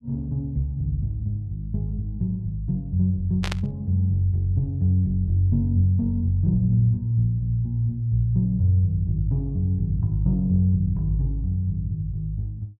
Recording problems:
burst of static; at 3.5 s; peak -3 dB vs average level

